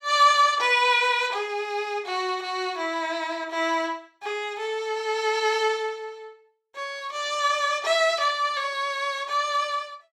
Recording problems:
none

